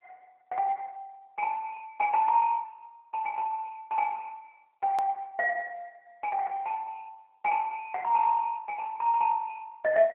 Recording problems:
telephone audio; 220 Hz to 3.8 kHz, AMR-NB
click at an edit; at 5 s

